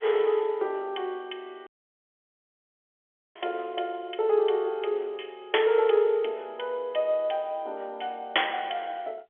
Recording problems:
phone line; 340 Hz to 3.4 kHz, G.711
dropout; at 1.5 s for 1.5 s

